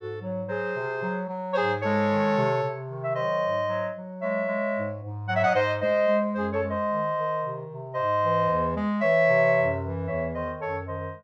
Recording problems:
none

